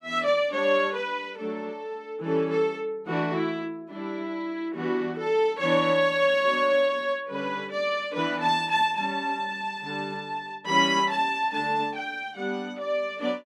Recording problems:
none

